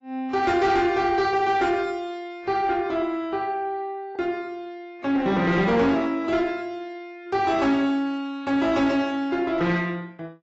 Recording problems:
codec artefacts; AAC, log-spectral distance 2 dB, nothing above 7.1 kHz
distortion; soft clipping, signal-to-distortion ratio 12 dB

